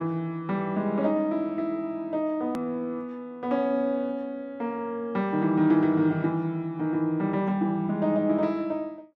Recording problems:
click at an edit; at 2.5 s

